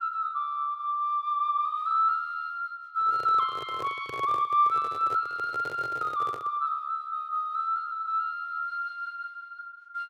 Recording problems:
microphone handling noise; from 3 to 6.5 s; peak -8 dB vs average level

